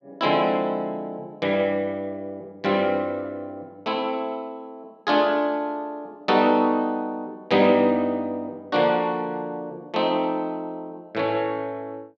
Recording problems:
none

